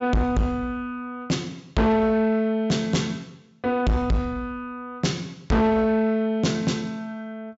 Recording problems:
low-pass filter; nothing above 8 kHz
distortion; soft clipping, signal-to-distortion ratio 6 dB

